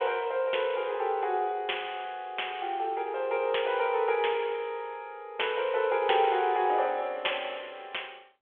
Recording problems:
phone line; 320 Hz to 3.5 kHz, G.726

